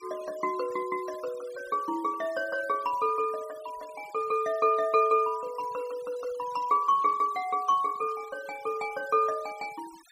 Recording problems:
denoising artefacts; signal-to-artefact ratio 23 dB

